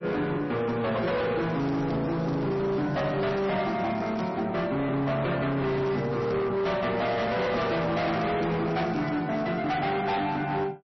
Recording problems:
codec artefacts; MP3, log-spectral distance 3 dB, nothing above 5.8 kHz
distortion; hard clipping, signal-to-distortion ratio 8 dB
crackle; 4 times, first at 0.5 s; loose cable, SNR 24 dB

